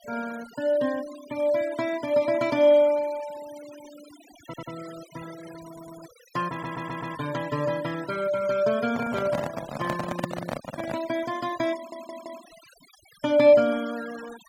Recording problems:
denoising artefacts; signal-to-artefact ratio 19 dB
audio stuttering; 4 times, first at 4.5 s
microphone handling noise; from 9 to 11 s; peak 0 dB vs average level

